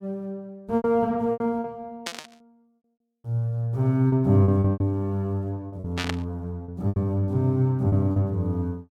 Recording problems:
lost packets; 10% of the sound replaced, filled with repeated pitch periods
burst of static; at 2 s and at 6 s; peak 0 dB vs average level

